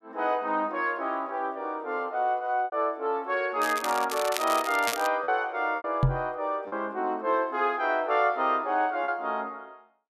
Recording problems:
packet loss; 3% of the sound replaced, filled with repeated pitch periods
crackling; from 3.5 to 5 s; loose cable, SNR 8 dB
microphone thump; at 6 s; peak +7 dB vs average level

